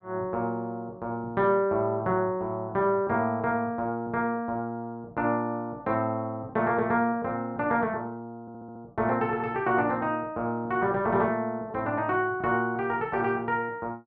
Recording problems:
audio stuttering; at 8.5 s

